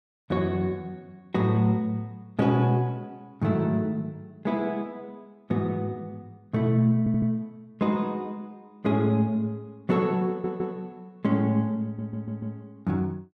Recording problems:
audio stuttering; at 7 s, at 10 s and at 12 s

